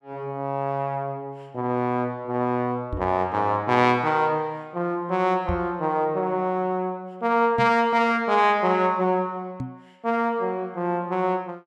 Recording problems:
knock on the microphone; 4 times, first at 3 s; peak -2 dB vs average level

